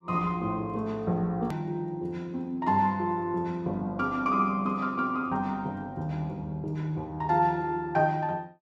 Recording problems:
edit click; at 1.5 s

